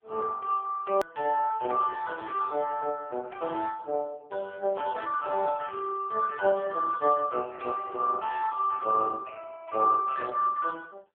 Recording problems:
phone line; 340 Hz to 2.6 kHz, AMR-NB
hard cut with a click; at 1 s

